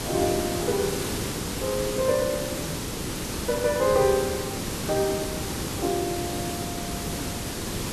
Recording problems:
hiss; SNR 3 dB

